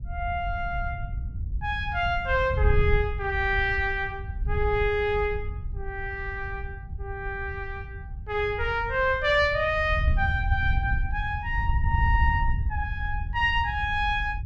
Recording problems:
wind noise; below 86 Hz, SNR 4 dB

